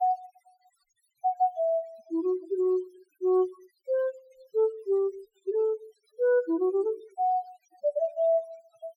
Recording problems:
noise reduction artefacts; signal-to-artefact ratio 26 dB

